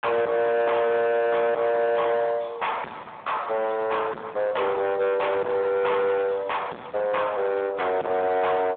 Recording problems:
phone line; 280 Hz to 3.5 kHz, Speex
distorted audio; soft clipping, signal-to-distortion ratio 6 dB

